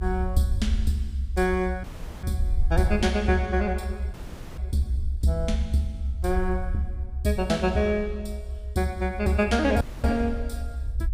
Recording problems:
rumble; below 70 Hz, SNR 5 dB
dropout; at 2 s, at 4 s and at 10 s

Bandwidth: 15.5 kHz